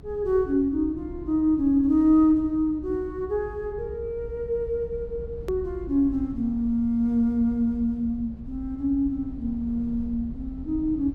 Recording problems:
rumble; below 110 Hz, SNR 15 dB
hard cut with a click; at 5.5 s

